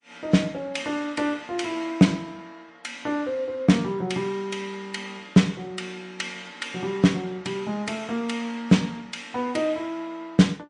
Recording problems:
lossy codec; MP3, log-spectral distance 2 dB, nothing above 9 kHz

